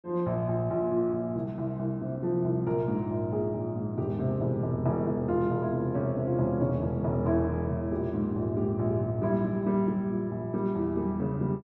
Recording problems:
none

